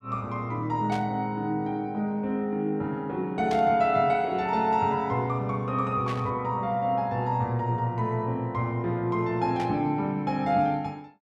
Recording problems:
static burst; 4 times, first at 1 s; peak -8 dB vs average level

